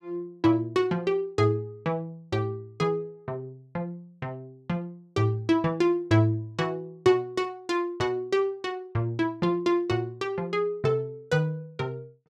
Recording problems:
none

